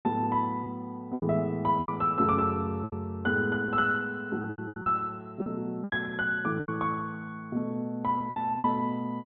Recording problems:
treble missing; nothing above 4 kHz
lost packets; 9% of the sound replaced, filled with repeated pitch periods

